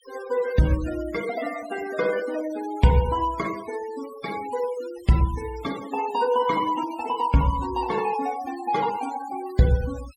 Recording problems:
denoising artefacts; signal-to-artefact ratio 16 dB

